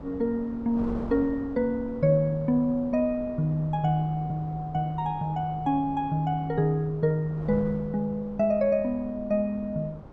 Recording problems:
wind on the microphone; below 480 Hz, SNR 16 dB

